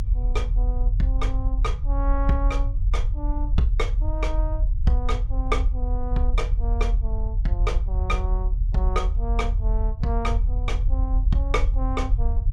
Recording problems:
low-frequency rumble; below 54 Hz, strongest tone 40 Hz, SNR -5 dB

